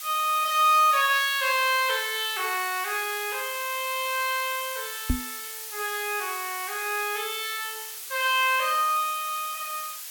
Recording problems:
background hiss; slope +4 dB per octave, SNR 9 dB
knock on the microphone; at 5 s; peak +3 dB vs average level

